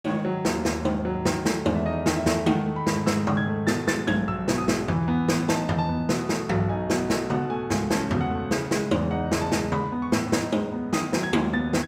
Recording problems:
none

